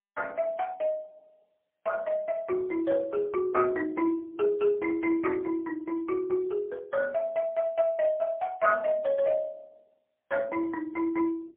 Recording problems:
telephone audio; 320 Hz to 2.2 kHz, AMR-NB, then MP3

